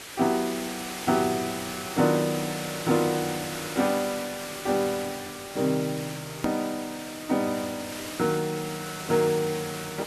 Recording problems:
background hiss; slope -1 dB per octave, SNR 8 dB
hard cut with a click; at 6.5 s

